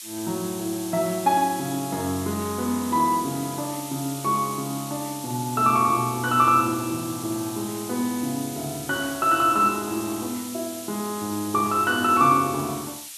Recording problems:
background hiss; slope +6 dB per octave, SNR 11 dB

